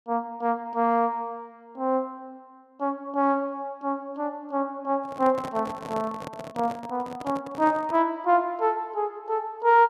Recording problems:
microphone handling noise; from 5 to 8 s; peak -6 dB vs average level

